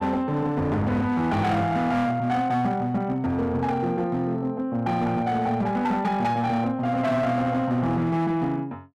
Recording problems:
distortion; hard clipping, signal-to-distortion ratio 11 dB

